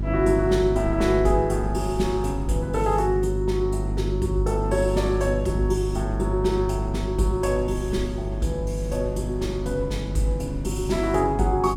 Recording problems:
hum; 50 Hz, harmonics up to 400 Hz, SNR 4 dB
wind on the microphone; below 100 Hz, SNR 16 dB

